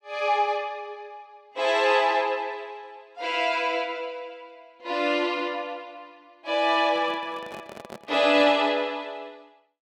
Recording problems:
microphone handling noise; from 7 to 8.5 s; peak -11 dB vs average level

